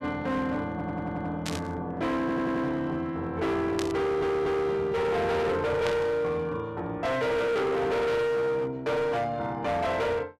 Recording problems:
distorted audio; hard clipping, signal-to-distortion ratio 7 dB
stutter; at 0.5 s, at 2 s and at 4 s
static burst; at 1.5 s, at 4 s and at 6 s; peak -2 dB vs average level

